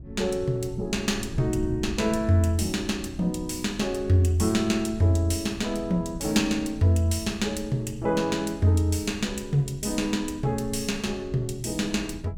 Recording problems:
wind on the microphone; below 140 Hz, SNR 15 dB

